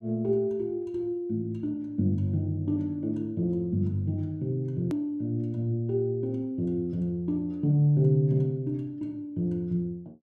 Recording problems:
hard cut with a click; at 5 s

